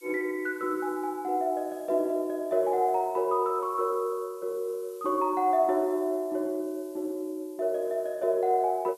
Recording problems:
background hiss; slope +5 dB per octave, SNR 26 dB

